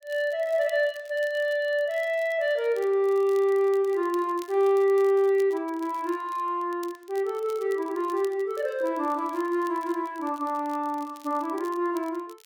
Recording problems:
crackling; vinyl, SNR 26 dB

